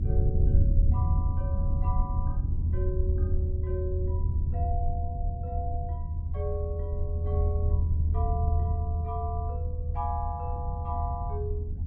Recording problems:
low-frequency rumble; below 82 Hz, SNR -9 dB

